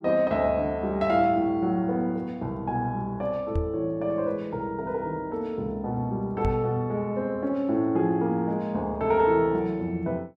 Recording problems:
microphone thump; at 3.5 s and at 6.5 s; peak +1 dB vs average level

